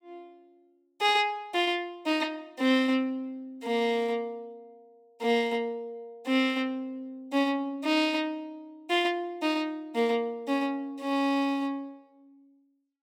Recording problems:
none

